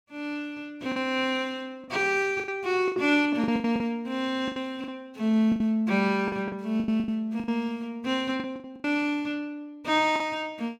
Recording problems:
packet loss; 11% of the sound replaced, filled with the last packet

